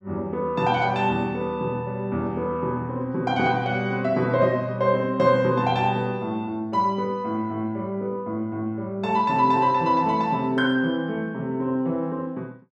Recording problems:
none

